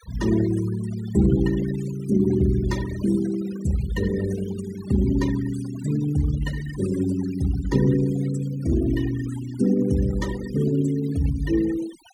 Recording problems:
denoising artefacts; signal-to-artefact ratio 16 dB

